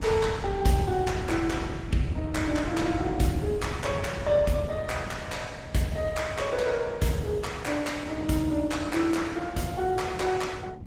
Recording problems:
codec artefacts; Opus, log-spectral distance 3 dB, nothing above 17 kHz
wind noise; below 170 Hz, SNR 10 dB

